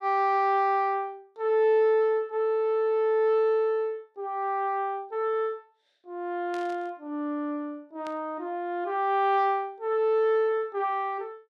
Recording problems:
burst of static; at 6.5 s and at 8 s; peak -15 dB vs average level

